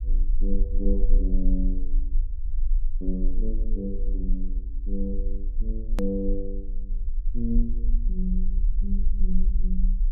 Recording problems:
low-frequency rumble; below 36 Hz, strongest tone 22 Hz, SNR -5 dB
click at an edit; at 6 s

